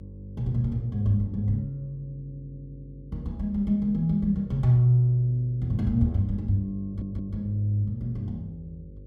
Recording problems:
hum; 50 Hz, harmonics up to 550 Hz, SNR 20 dB
stutter; at 7 s

